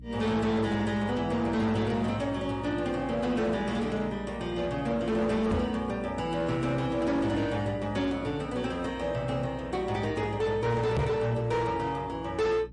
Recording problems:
lossy compression; MP3, log-spectral distance 2 dB
distortion; hard clipping, signal-to-distortion ratio 10 dB
mains hum; 60 Hz, harmonics up to 300 Hz, SNR 17 dB
microphone bump; at 5.5 s and at 11 s; peak +4 dB vs average level

